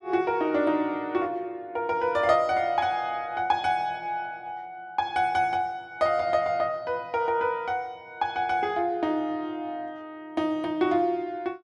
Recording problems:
none

